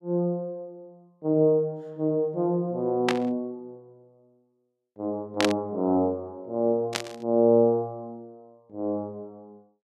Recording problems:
static burst; at 3 s, at 5.5 s and at 7 s; peak +4 dB vs average level

